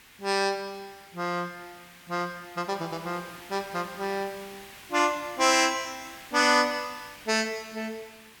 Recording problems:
background hiss; SNR 19 dB

